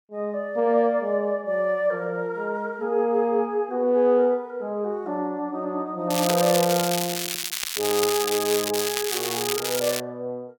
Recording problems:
crackling; from 6 to 10 s; loose cable, SNR 3 dB

